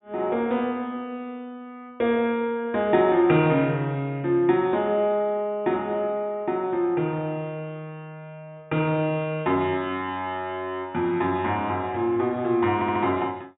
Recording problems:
treble cut off; nothing above 3.8 kHz
stutter; at 13 s

